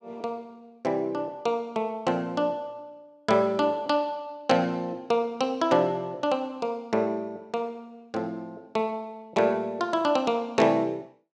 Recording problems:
none

